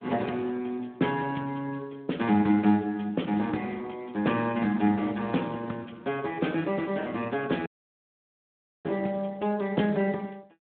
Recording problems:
phone line; 150 Hz to 3.6 kHz, Speex
audio cutting out; at 7.5 s for 1 s

